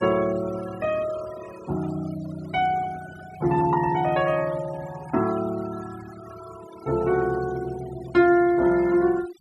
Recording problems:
denoising artefacts; signal-to-artefact ratio 19 dB

